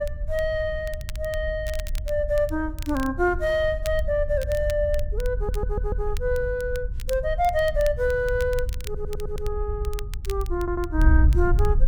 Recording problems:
wind on the microphone; below 64 Hz, SNR 3 dB
crackling; vinyl, SNR 18 dB
stutter; at 5.5 s, at 9 s and at 11 s

